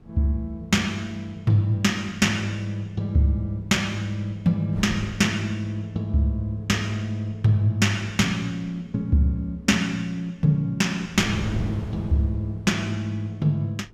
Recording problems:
wind noise; below 220 Hz, SNR 15 dB

